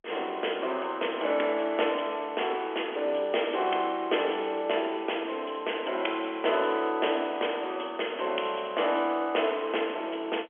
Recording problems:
telephone audio; 300 Hz to 3.4 kHz, G.711

